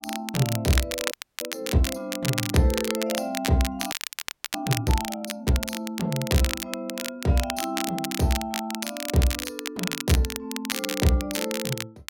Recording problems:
crackling; vinyl, SNR 4 dB
audio freezing; at 1 s and at 4 s for 0.5 s

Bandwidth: 16.5 kHz